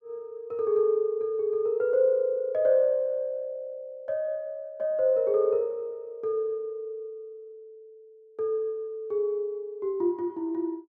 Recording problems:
none

